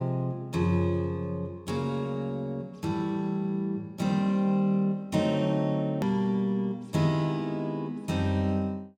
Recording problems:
hard cut with a click; at 6 s

